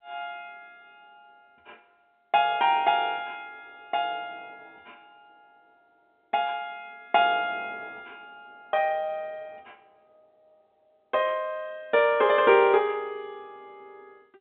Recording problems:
phone line; 150 Hz to 3.8 kHz, G.711

